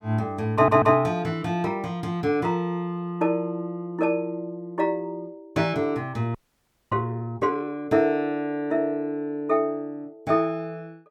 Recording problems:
stutter; at 0.5 s
audio freezing; at 6.5 s for 0.5 s

